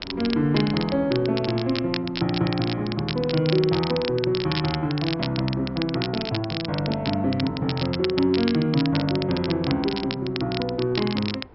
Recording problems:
treble missing; nothing above 5.4 kHz
wind on the microphone; below 650 Hz, SNR 24 dB
crackle; vinyl, SNR 9 dB

